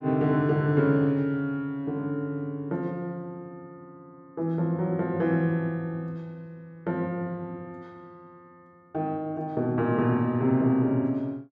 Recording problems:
none

